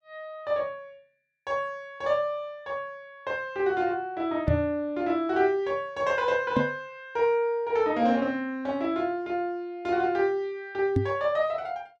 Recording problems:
knock on the microphone; at 4.5 s, at 6.5 s and at 11 s; peak +6 dB vs average level

